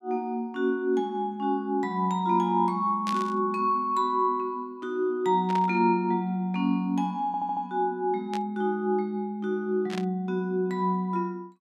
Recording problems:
static burst; 4 times, first at 3 s; peak -6 dB vs average level
stutter; at 7.5 s

